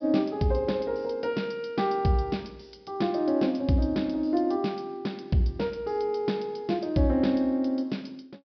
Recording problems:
low-pass filter; nothing above 5.5 kHz

